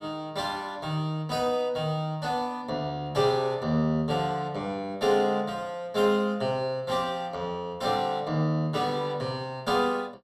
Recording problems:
none

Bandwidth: 16.5 kHz